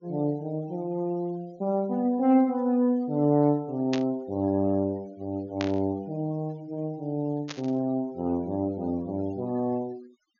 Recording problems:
treble cut off; nothing above 6.9 kHz
noise reduction artefacts; signal-to-artefact ratio 26 dB
static burst; at 4 s, at 5.5 s and at 7.5 s; peak -2 dB vs average level

